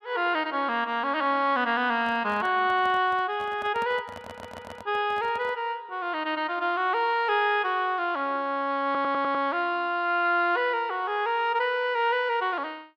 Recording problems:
handling noise; from 2 to 5.5 s; peak -11 dB vs average level
audio stuttering; at 4 s and at 9 s

